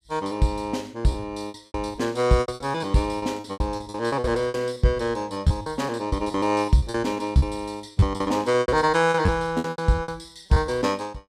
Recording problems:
packet loss; 16% of the sound replaced, filled with repeated pitch periods

